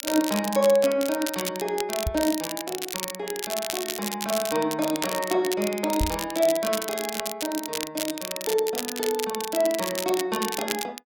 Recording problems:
crackle; vinyl, SNR 5 dB
microphone bump; at 2 s and at 6 s; peak +3 dB vs average level

